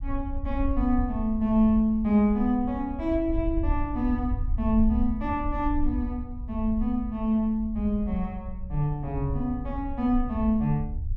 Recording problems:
rumble; below 68 Hz, SNR 8 dB

